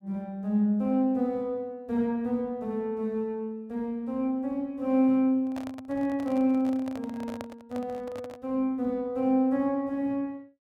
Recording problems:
handling noise; from 5.5 to 8.5 s; peak -7 dB vs average level

